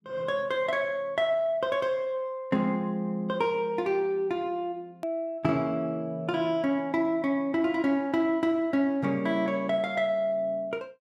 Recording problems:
click at an edit; at 5 s

